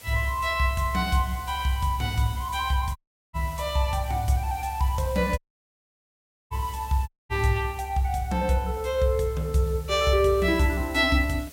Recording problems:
background hiss; SNR 20 dB
audio cutting out; at 3 s, at 5.5 s for 1 s and at 7 s

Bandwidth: 16 kHz